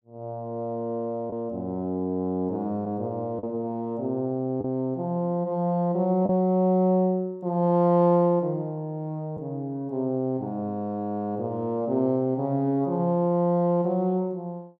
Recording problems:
lost packets; 1% of the sound replaced, filled with the last packet

